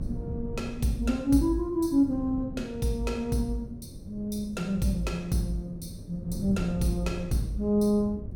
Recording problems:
hum; 60 Hz, harmonics up to 600 Hz, SNR 28 dB
wind noise; below 180 Hz, SNR 12 dB

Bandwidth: 17 kHz